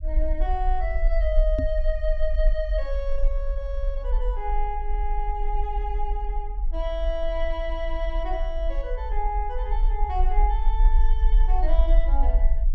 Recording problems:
rumble; below 42 Hz, SNR -4 dB
microphone thump; at 1.5 s; peak +7 dB vs average level

